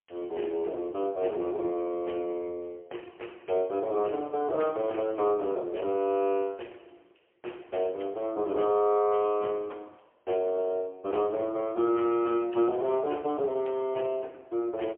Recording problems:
telephone audio; 280 Hz to 3.2 kHz, AMR-NB, then MP3

